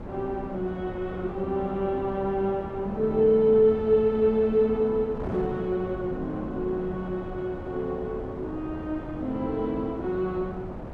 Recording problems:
wind noise; below 560 Hz, SNR 11 dB

